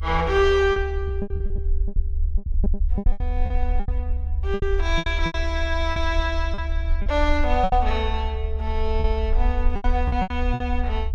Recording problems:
low-frequency rumble; below 70 Hz, SNR 1 dB
lost packets; 13% of the sound replaced, filled with repeated pitch periods

